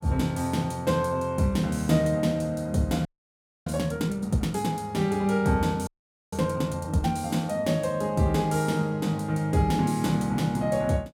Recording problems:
frozen audio; at 3 s for 0.5 s and at 6 s

